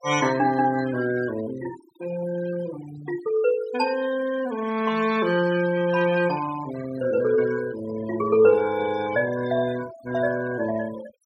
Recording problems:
noise reduction artefacts; signal-to-artefact ratio 15 dB

